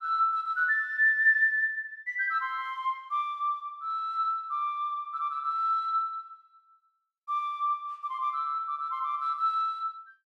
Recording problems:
none

